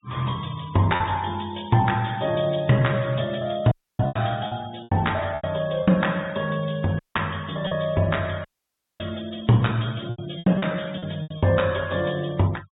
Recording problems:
treble cut off; nothing above 4 kHz
noise reduction artefacts; signal-to-artefact ratio 23 dB
packet loss; 7% of the sound replaced, filled with repeated pitch periods
dropout; at 3.5 s, at 7 s and at 8.5 s for 0.5 s

